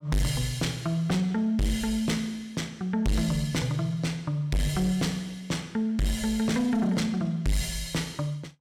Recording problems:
distorted audio; soft clipping, signal-to-distortion ratio 6 dB

